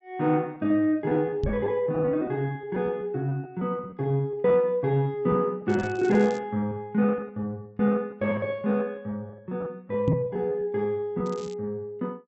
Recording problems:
treble missing; nothing above 7.8 kHz
packet loss; 10% of the sound replaced, filled with repeated pitch periods
microphone thump; at 1.5 s and at 10 s; peak +5 dB vs average level
crackle; at 5.5 s and at 11 s; loose cable, SNR 23 dB

